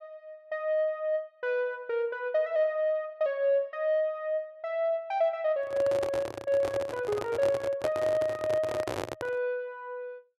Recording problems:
handling noise; from 5.5 to 9.5 s; peak 0 dB vs average level

